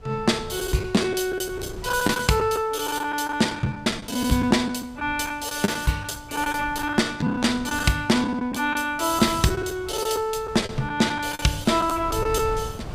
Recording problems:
wind on the microphone; below 170 Hz, SNR 17 dB
lost packets; 10% of the sound replaced, filled with the last packet

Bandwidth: 15.5 kHz